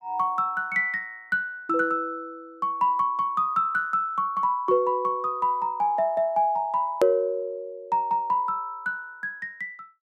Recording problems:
click at an edit; at 7 s

